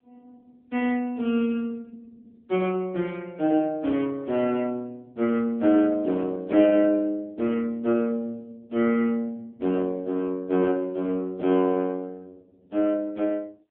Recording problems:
phone line; 190 Hz to 3.7 kHz, AMR-NB

